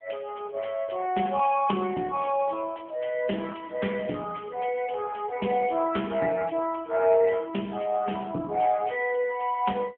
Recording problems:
telephone audio; 170 Hz to 3.3 kHz, AMR-NB

